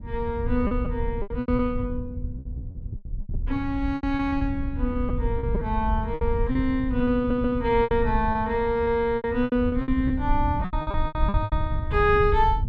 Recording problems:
rumble; below 88 Hz, SNR 5 dB
lost packets; 13% of the sound replaced, filled with repeated pitch periods
stutter; at 7 s

